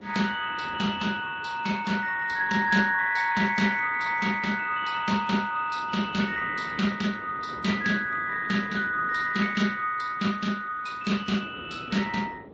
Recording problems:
lossy codec; Speex, then MP3, log-spectral distance 5 dB, nothing above 6.9 kHz
wind noise; below 500 Hz, SNR 19 dB

